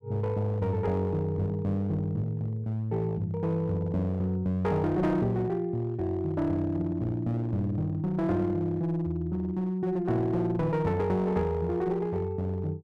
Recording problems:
distorted audio; hard clipping, uneven, signal-to-distortion ratio 10 dB

